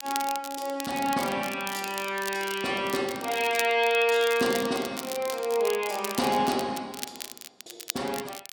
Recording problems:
crackling; vinyl, SNR 11 dB

